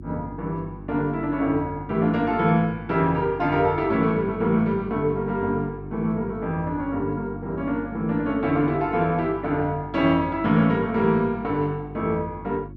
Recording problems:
electrical hum; 50 Hz, harmonics up to 350 Hz, SNR 16 dB

